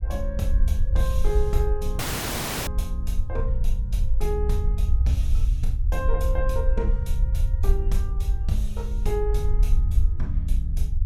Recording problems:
low-frequency rumble; below 62 Hz, SNR -7 dB
dropout; at 2 s for 0.5 s

